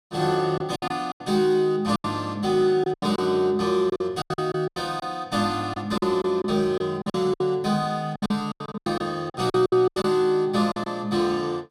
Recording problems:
packet loss; 13% of the sound replaced, filled with silence

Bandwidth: 14.5 kHz